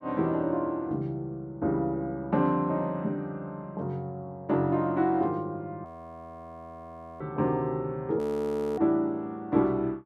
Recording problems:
audio freezing; at 6 s for 1.5 s and at 8 s for 0.5 s

